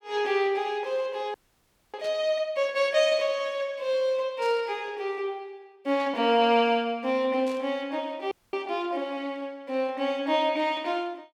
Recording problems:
audio freezing; at 1.5 s for 0.5 s and at 8.5 s
static burst; 4 times, first at 2 s; peak -14 dB vs average level

